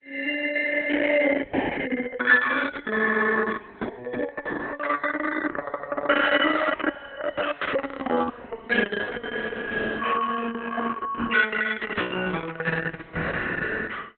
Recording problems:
lossy codec; Opus, log-spectral distance 6 dB

